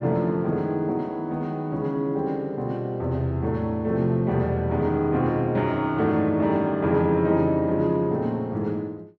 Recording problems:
none

